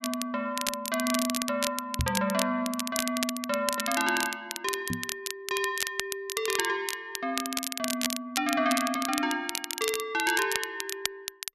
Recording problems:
crackle; vinyl, SNR 3 dB
microphone thump; at 2 s and at 5 s; peak +4 dB vs average level

